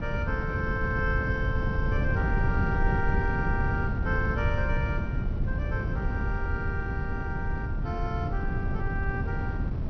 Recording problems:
treble missing; nothing above 6 kHz
wind noise; below 140 Hz, SNR -3 dB

